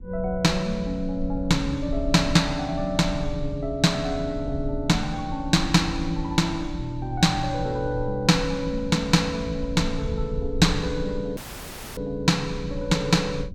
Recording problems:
rumble; below 76 Hz, SNR 11 dB
dropout; at 11 s for 0.5 s

